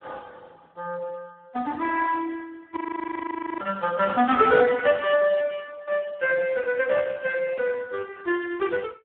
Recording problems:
telephone audio; 220 Hz to 3.1 kHz, Speex
audio freezing; at 3 s for 1 s

